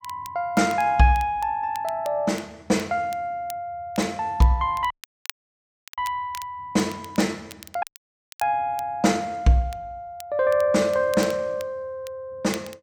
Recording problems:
crackling; vinyl, SNR 20 dB
dropout; at 5 s for 1 s and at 8 s for 0.5 s

